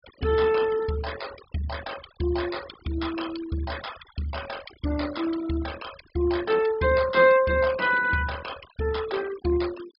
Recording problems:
treble cut off; nothing above 5.5 kHz
noise reduction artefacts; signal-to-artefact ratio 16 dB

